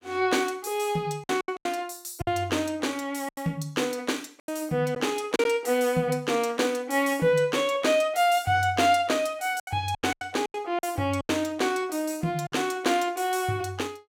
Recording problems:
lost packets; 7% of the sound replaced, filled with silence

